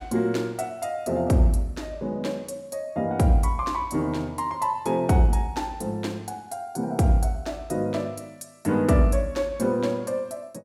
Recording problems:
none

